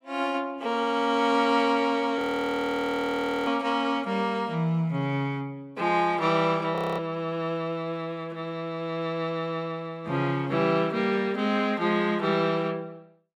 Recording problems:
audio freezing; at 2 s for 1.5 s and at 7 s

